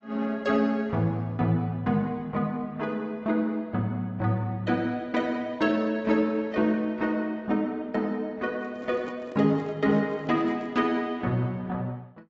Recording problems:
lossy codec; AAC, log-spectral distance 2 dB, nothing above 6.7 kHz
microphone handling noise; from 8.5 to 11 s; peak -10 dB vs average level

